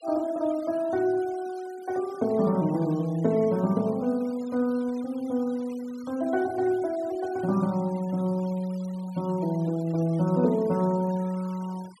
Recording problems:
noise reduction artefacts; signal-to-artefact ratio 23 dB

